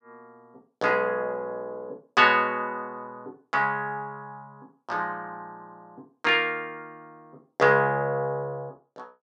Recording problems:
none

